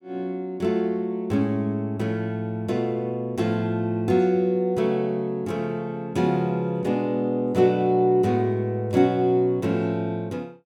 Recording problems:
none

